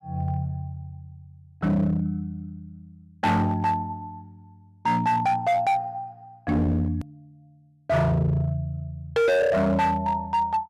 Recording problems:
distorted audio; hard clipping, signal-to-distortion ratio 7 dB
hard cut with a click; at 7 s

